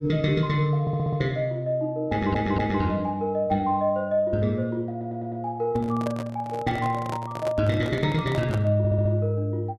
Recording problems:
stutter; 4 times, first at 1 s
microphone handling noise; from 5.5 to 9 s; peak -4 dB vs average level

